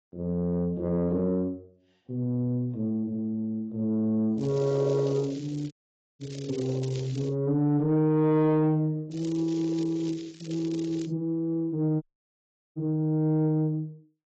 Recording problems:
lossy codec; AAC, then AAC, log-spectral distance 2 dB
distorted audio; soft clipping, signal-to-distortion ratio 10 dB
crackling; from 4.5 to 7.5 s and from 9 to 11 s; loose cable, SNR 21 dB
dropout; at 5.5 s and at 12 s for 0.5 s

